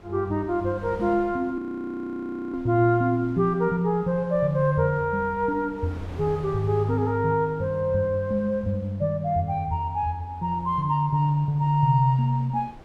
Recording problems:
wind on the microphone; below 630 Hz, SNR 22 dB
audio freezing; at 1.5 s for 1 s

